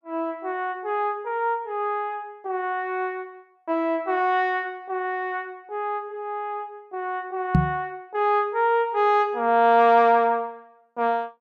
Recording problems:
microphone thump; at 7.5 s; peak +8 dB vs average level

